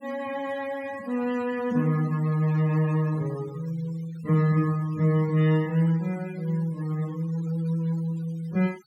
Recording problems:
denoising artefacts; signal-to-artefact ratio 22 dB

